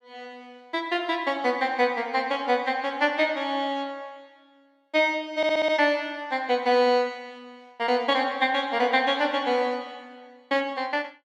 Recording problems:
stutter; at 5.5 s

